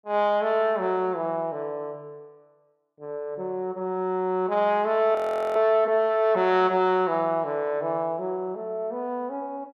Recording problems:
frozen audio; at 5 s

